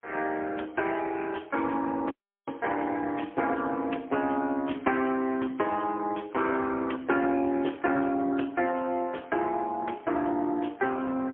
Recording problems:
telephone audio; 240 Hz to 3.5 kHz, AMR-NB, then MP3
audio cutting out; at 2 s

